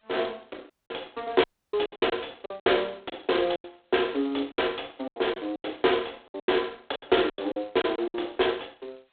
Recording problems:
phone line; 260 Hz to 3.7 kHz, G.726
lost packets; 15% of the sound replaced, filled with silence
audio cutting out; at 0.5 s and at 1.5 s

